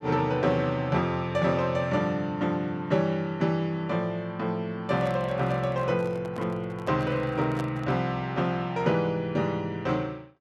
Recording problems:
handling noise; from 5 to 8 s; peak -5 dB vs average level

